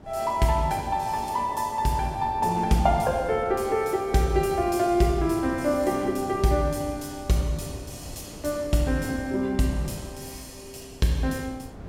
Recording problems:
wind on the microphone; below 380 Hz, SNR 20 dB

